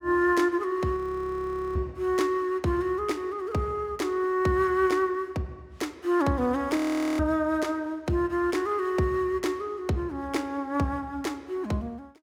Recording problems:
audio freezing; at 1 s for 1 s and at 7 s

